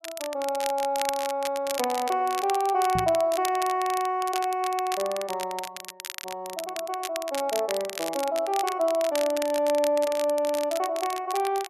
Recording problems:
crackling; vinyl, SNR 10 dB
microphone bump; at 3 s; peak -1 dB vs average level

